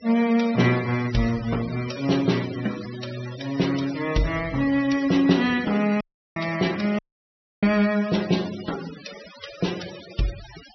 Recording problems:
treble missing; nothing above 5.9 kHz
denoising artefacts; signal-to-artefact ratio 15 dB
dropout; at 6 s and at 7 s for 0.5 s

